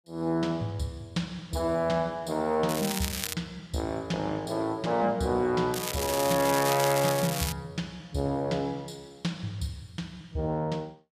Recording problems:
crackling; at 2.5 s and from 5.5 to 7.5 s; loose cable, SNR 4 dB

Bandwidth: 14.5 kHz